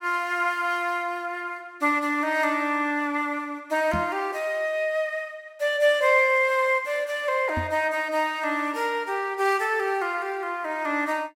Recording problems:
knock on the microphone; at 4 s and at 7.5 s; peak -2 dB vs average level

